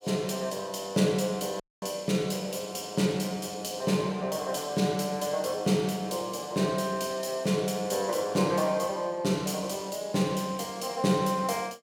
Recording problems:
dropout; at 1.5 s

